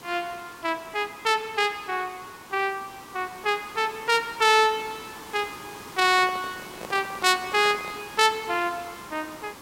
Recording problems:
hiss; SNR 17 dB
handling noise; from 6 to 8 s; peak -9 dB vs average level

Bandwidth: 16 kHz